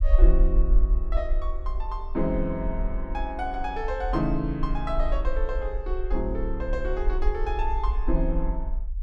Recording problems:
rumble; below 46 Hz, SNR -2 dB

